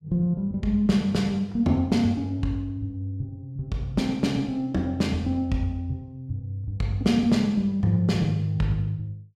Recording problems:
none

